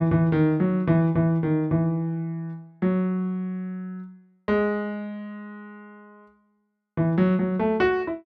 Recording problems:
none

